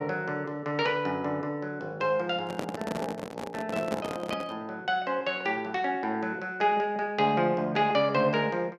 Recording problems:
handling noise; from 2.5 to 4.5 s; peak 0 dB vs average level

